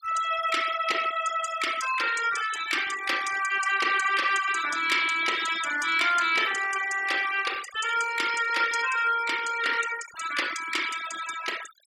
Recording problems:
denoising artefacts; signal-to-artefact ratio 12 dB

